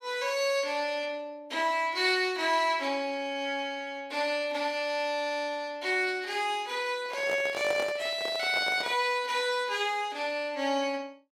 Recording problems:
microphone handling noise; from 7 to 9 s; peak -3 dB vs average level

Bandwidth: 16 kHz